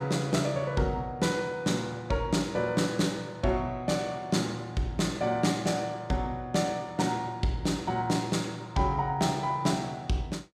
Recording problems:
none

